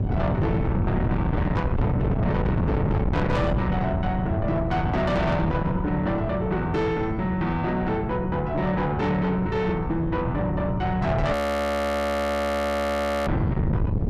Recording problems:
distorted audio; soft clipping, signal-to-distortion ratio 8 dB
wind noise; below 280 Hz, SNR 2 dB
frozen audio; at 11 s for 2 s

